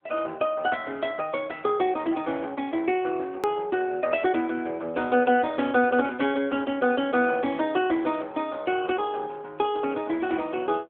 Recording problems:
telephone audio; 190 Hz to 3.4 kHz, AMR-NB
hard cut with a click; at 3.5 s

